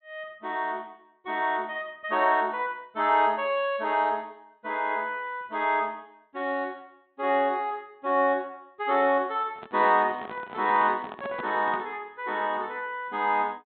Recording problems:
treble cut off; nothing above 4 kHz
handling noise; from 9.5 to 12 s; peak -6 dB vs average level

